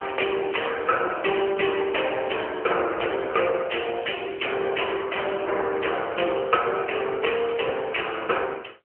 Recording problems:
telephone audio; 320 Hz to 3.2 kHz, AMR-NB

